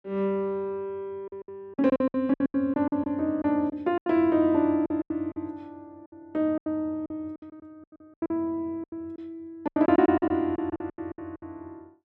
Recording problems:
packet loss; 15% of the sound replaced, filled with silence

